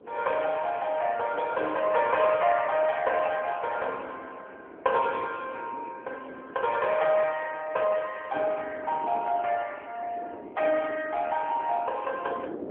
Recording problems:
telephone audio; 320 Hz to 3.3 kHz, AMR-NB
wind noise; below 510 Hz, SNR 19 dB

